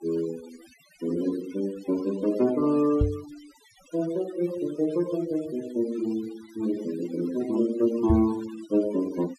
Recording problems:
noise reduction artefacts; signal-to-artefact ratio 19 dB
microphone thump; at 3 s and at 8 s; peak +6 dB vs average level

